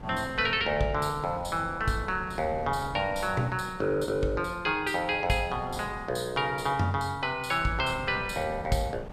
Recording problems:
wind noise; below 430 Hz, SNR 15 dB

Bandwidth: 15 kHz